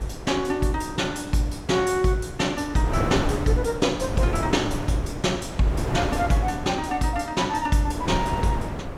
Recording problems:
wind noise; below 550 Hz, SNR 6 dB

